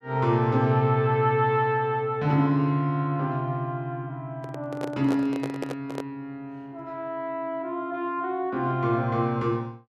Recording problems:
microphone handling noise; from 4.5 to 6 s; peak -2 dB vs average level

